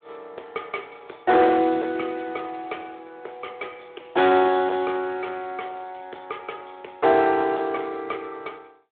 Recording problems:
telephone audio; 340 Hz to 3.6 kHz, Speex
distortion; hard clipping, uneven, signal-to-distortion ratio 14 dB

